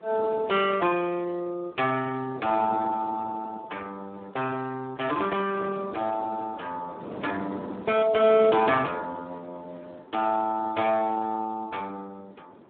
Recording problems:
telephone audio; 170 Hz to 3.6 kHz, Speex
wind on the microphone; below 610 Hz, SNR 14 dB

